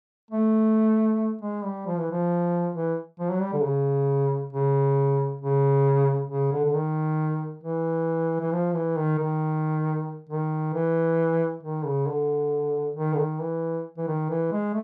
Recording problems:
none

